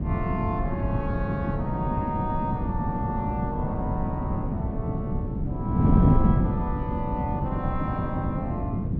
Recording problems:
wind noise; below 220 Hz, SNR -6 dB

